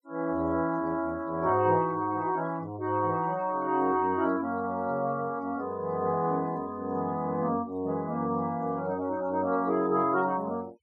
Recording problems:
denoising artefacts; signal-to-artefact ratio 26 dB

